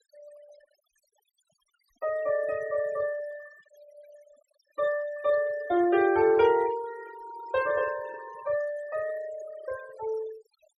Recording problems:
denoising artefacts; signal-to-artefact ratio 18 dB

